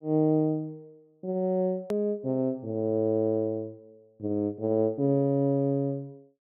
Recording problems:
click at an edit; at 2 s

